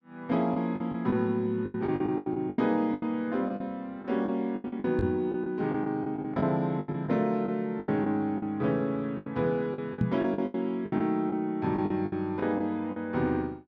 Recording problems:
packet loss; 14% of the sound replaced, filled with the last packet
microphone thump; at 5 s and at 10 s; peak +5 dB vs average level

